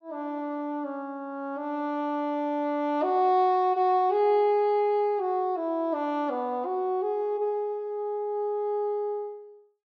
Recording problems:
none

